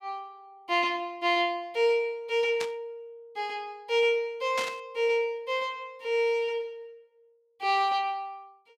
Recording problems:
burst of static; at 2.5 s and at 4.5 s; peak -1 dB vs average level

